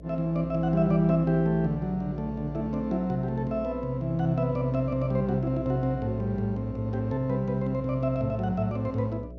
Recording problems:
hum; 60 Hz, harmonics up to 660 Hz, SNR 14 dB

